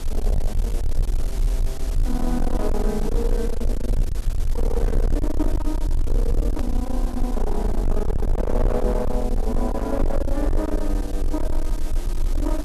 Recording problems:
distortion; hard clipping, signal-to-distortion ratio 7 dB
background hiss; slope -4 dB per octave, SNR 12 dB
rumble; below 44 Hz, strongest tone 24 Hz, SNR -1 dB
hard cut with a click; at 6.5 s

